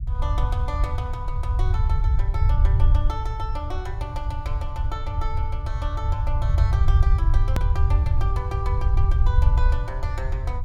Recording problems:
low-frequency rumble; below 84 Hz, SNR -10 dB
hard cut with a click; at 7.5 s

